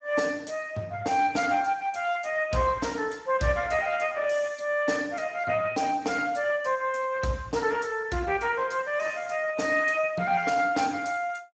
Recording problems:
lossy codec; Speex, log-spectral distance 4 dB, nothing above 7.6 kHz

